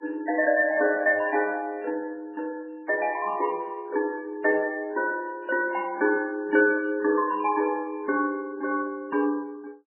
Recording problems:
lossy codec; MP3, log-spectral distance 2 dB, nothing above 2.4 kHz

